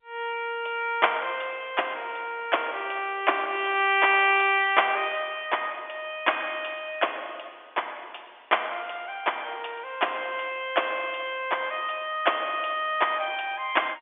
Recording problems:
phone line; 220 Hz to 3.5 kHz, G.711

